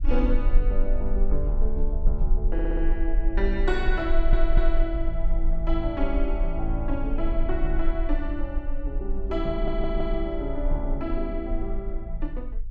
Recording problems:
rumble; below 38 Hz, strongest tone 18 Hz, SNR -2 dB
audio stuttering; at 2.5 s, at 4 s and at 9.5 s

